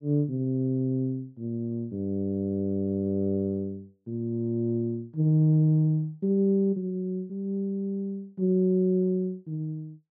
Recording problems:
none

